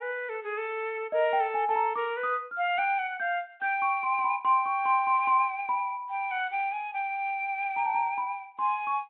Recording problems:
treble cut off; nothing above 4 kHz

